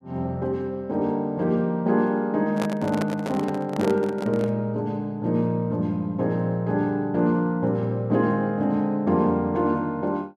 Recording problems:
handling noise; from 2.5 to 4.5 s; peak -1 dB vs average level

